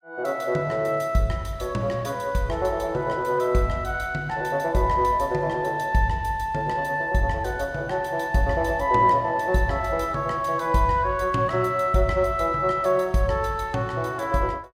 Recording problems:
none

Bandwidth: 16 kHz